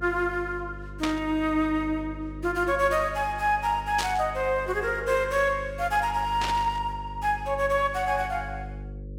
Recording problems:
mains hum; 50 Hz, harmonics up to 550 Hz, SNR 14 dB
burst of static; at 1 s, at 4 s and at 6.5 s; peak +1 dB vs average level

